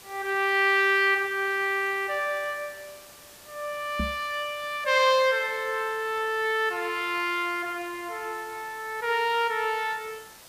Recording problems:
hiss; slope -1 dB per octave, SNR 21 dB
knock on the microphone; at 4 s; peak -2 dB vs average level

